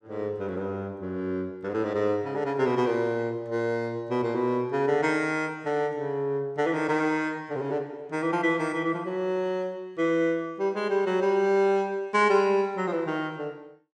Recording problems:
none

